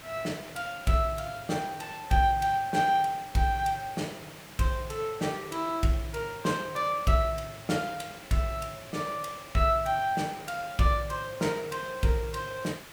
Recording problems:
background hiss; slope -2 dB per octave, SNR 17 dB

